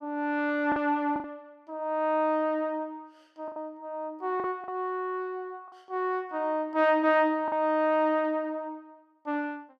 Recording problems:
packet loss; 4% of the sound replaced, filled with the last packet

